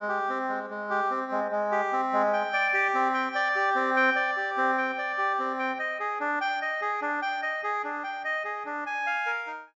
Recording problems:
low-pass filter; nothing above 8 kHz

